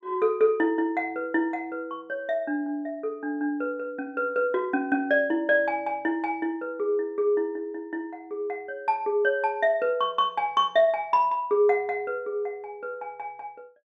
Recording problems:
none

